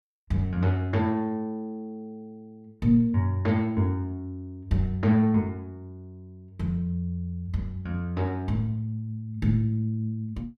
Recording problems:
none

